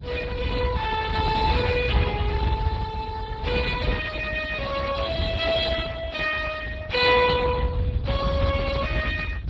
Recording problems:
lossy codec; Vorbis, then Speex, log-spectral distance 3 dB
rumble; below 120 Hz, SNR 5 dB

